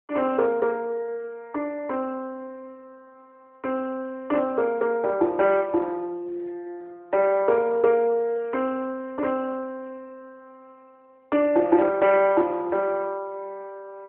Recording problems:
phone line; 300 Hz to 2.6 kHz, AMR-NB

